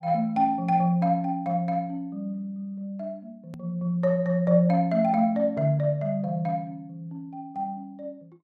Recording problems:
edit click; at 3.5 s

